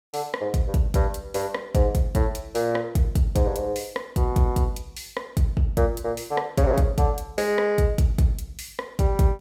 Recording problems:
none

